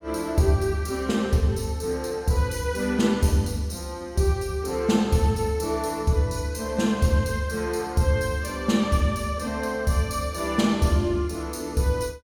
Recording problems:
none

